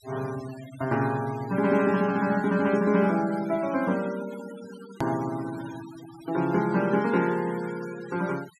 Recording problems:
denoising artefacts; signal-to-artefact ratio 18 dB
edit click; at 5 s

